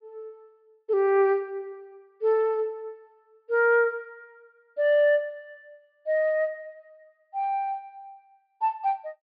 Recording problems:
treble cut off; nothing above 5.1 kHz

